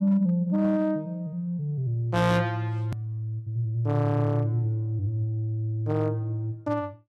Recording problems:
distorted audio; hard clipping, signal-to-distortion ratio 10 dB
edit click; at 3 s

